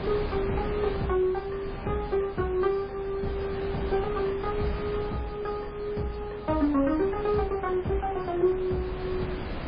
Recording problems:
codec artefacts; MP3, log-spectral distance 3 dB
wind noise; below 610 Hz, SNR 8 dB

